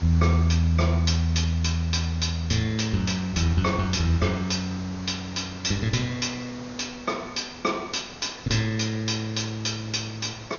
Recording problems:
treble cut off; nothing above 6.7 kHz
background hiss; slope -4 dB per octave, SNR 17 dB

